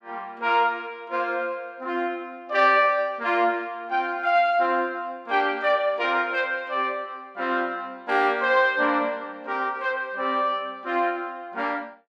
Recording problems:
none

